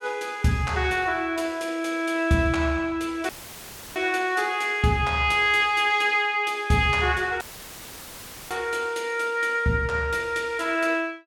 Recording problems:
audio cutting out; at 3.5 s for 0.5 s and at 7.5 s for 1 s; filled with static

